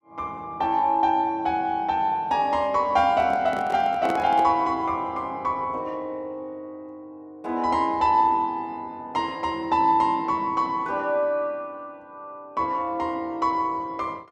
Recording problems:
microphone handling noise; from 3 to 4.5 s; peak -3 dB vs average level

